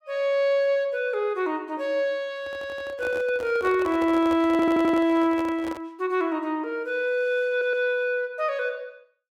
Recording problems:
microphone handling noise; from 2.5 to 6 s; peak -7 dB vs average level
stutter; at 2.5 s, at 4.5 s and at 7.5 s

